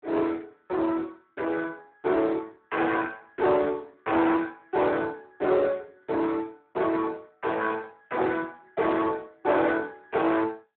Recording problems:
telephone audio; 390 Hz to 2.5 kHz, Speex
distortion; soft clipping, signal-to-distortion ratio 8 dB

